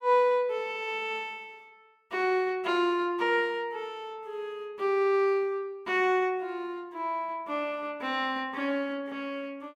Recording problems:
none

